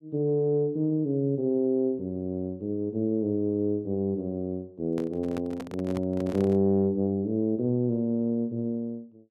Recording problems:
handling noise; from 5 to 6.5 s; peak -7 dB vs average level

